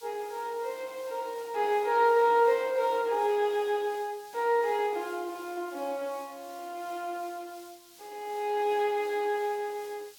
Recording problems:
background hiss; SNR 23 dB

